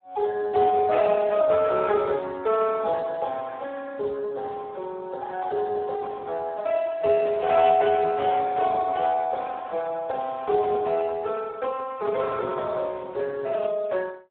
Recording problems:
phone line; 300 Hz to 2.2 kHz, Speex

